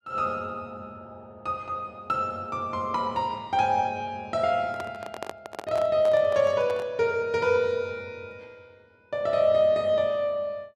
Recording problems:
handling noise; from 4.5 to 7 s; peak -5 dB vs average level

